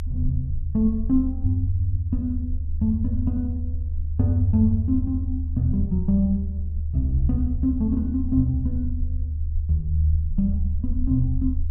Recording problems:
low-frequency rumble; below 78 Hz, strongest tone 76 Hz, SNR 4 dB

